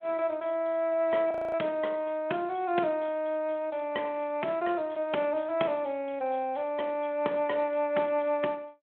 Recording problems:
phone line; 240 Hz to 3.2 kHz, Speex
audio freezing; at 1.5 s

